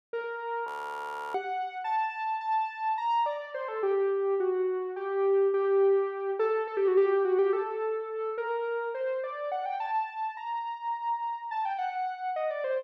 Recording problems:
audio freezing; at 0.5 s for 0.5 s

